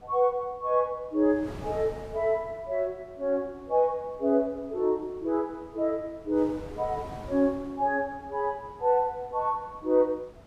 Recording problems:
wind on the microphone; below 630 Hz, SNR 20 dB

